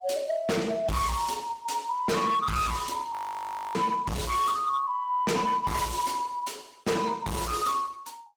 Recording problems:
lossy codec; Opus, log-spectral distance 4 dB, nothing above 19 kHz
distorted audio; hard clipping, signal-to-distortion ratio 6 dB
audio freezing; at 3 s for 0.5 s

